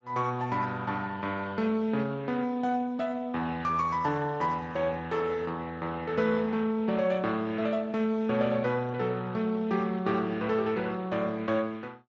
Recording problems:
lossy codec; Speex, log-spectral distance 3 dB

